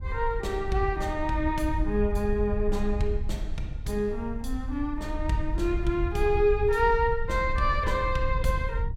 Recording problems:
wind on the microphone; below 66 Hz, SNR 5 dB

